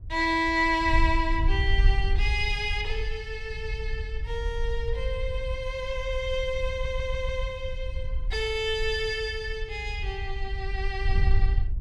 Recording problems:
wind on the microphone; below 60 Hz, SNR 3 dB
stutter; at 6.5 s

